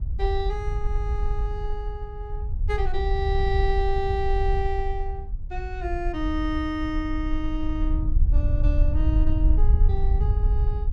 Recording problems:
wind noise; below 64 Hz, SNR -4 dB

